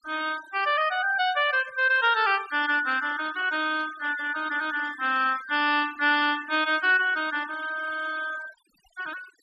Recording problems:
noise reduction artefacts; signal-to-artefact ratio 17 dB

